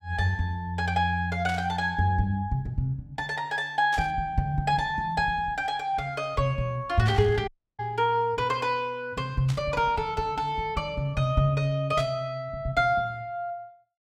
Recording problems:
static burst; 5 times, first at 1.5 s; peak -7 dB vs average level
dropout; at 7.5 s

